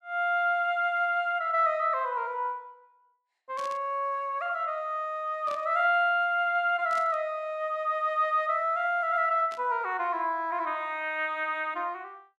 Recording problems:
static burst; 4 times, first at 3.5 s; peak -13 dB vs average level

